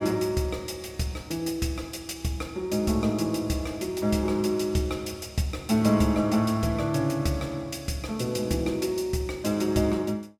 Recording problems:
none

